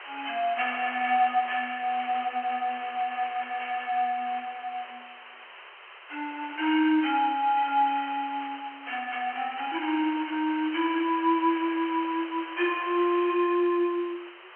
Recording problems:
telephone audio; 320 Hz to 3.2 kHz, G.711
background hiss; SNR 15 dB

